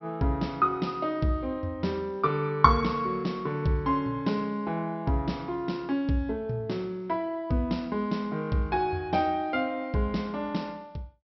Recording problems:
treble missing; nothing above 5.4 kHz

